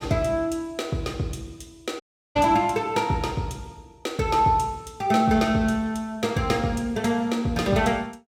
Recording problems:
audio cutting out; at 2 s

